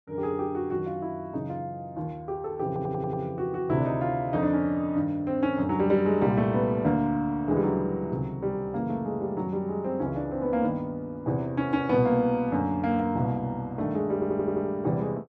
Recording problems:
audio stuttering; at 2.5 s and at 14 s

